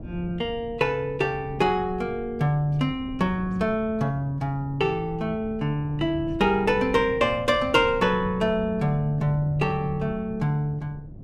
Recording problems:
wind on the microphone; below 200 Hz, SNR 15 dB

